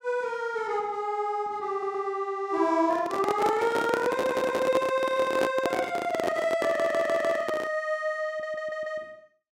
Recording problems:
audio stuttering; 4 times, first at 1.5 s
microphone handling noise; from 3 to 8 s; peak +3 dB vs average level

